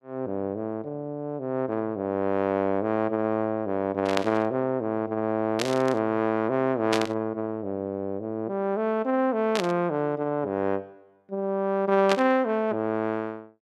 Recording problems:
static burst; 5 times, first at 4 s; peak +3 dB vs average level

